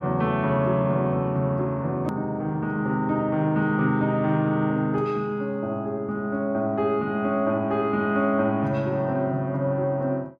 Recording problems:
click at an edit; at 2 s

